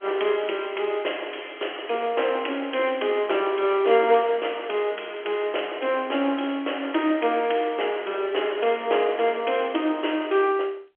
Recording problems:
telephone audio; 300 Hz to 3.3 kHz, G.711

